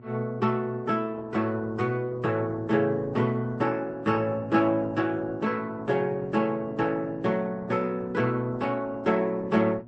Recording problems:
codec artefacts; Opus, then MP3, log-spectral distance 3 dB, nothing above 8.2 kHz
electrical hum; 60 Hz, harmonics up to 960 Hz, SNR 20 dB

